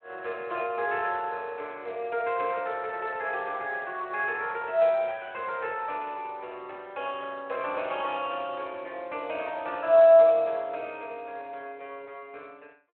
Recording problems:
phone line; 320 Hz to 3.3 kHz, Speex

